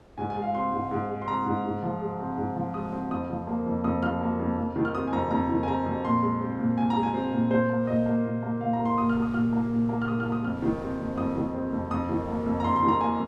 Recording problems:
wind on the microphone; below 650 Hz, SNR 23 dB

